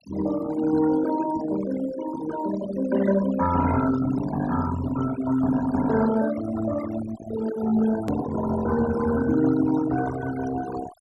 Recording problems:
noise reduction artefacts; signal-to-artefact ratio 11 dB
hard cut with a click; at 8 s

